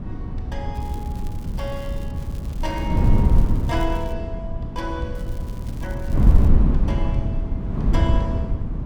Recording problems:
wind noise; below 120 Hz, SNR -9 dB
crackling; from 1 to 4 s and from 5 to 6.5 s; loose cable, SNR 17 dB

